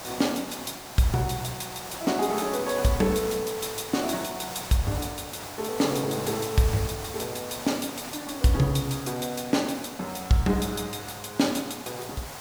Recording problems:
background hiss; SNR 9 dB

